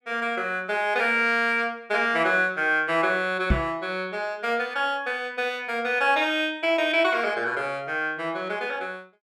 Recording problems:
microphone thump; at 3.5 s; peak +5 dB vs average level

